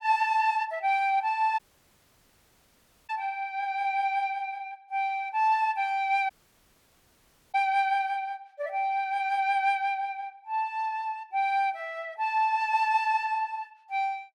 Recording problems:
dropout; at 1.5 s for 1.5 s and at 6.5 s for 1 s

